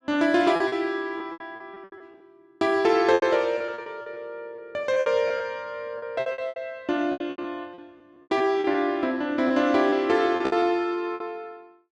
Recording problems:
lost packets; 14% of the sound replaced, filled with repeated pitch periods

